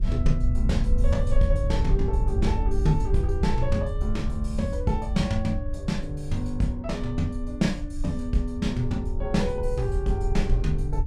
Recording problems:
low-frequency rumble; below 70 Hz, SNR 1 dB

